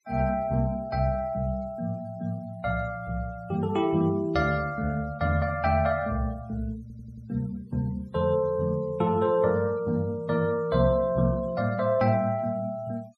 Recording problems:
noise reduction artefacts; signal-to-artefact ratio 27 dB
stutter; at 7 s

